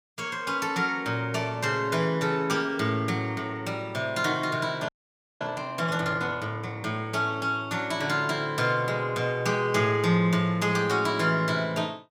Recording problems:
frozen audio; at 5 s for 0.5 s

